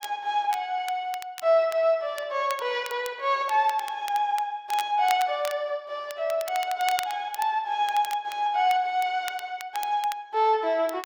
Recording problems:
crackle; vinyl, SNR 16 dB

